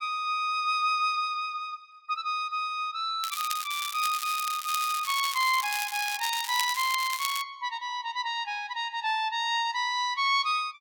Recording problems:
crackling; from 3 to 7.5 s; loose cable, SNR 6 dB

